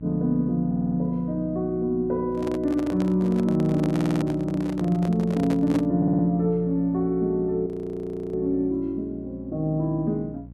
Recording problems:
hum; 60 Hz, harmonics up to 540 Hz, SNR 18 dB
stutter; at 0.5 s, at 4 s and at 6 s
handling noise; from 2.5 to 6 s; peak -4 dB vs average level
frozen audio; at 7.5 s for 0.5 s

